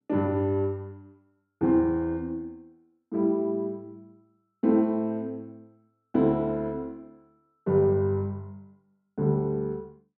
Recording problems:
none

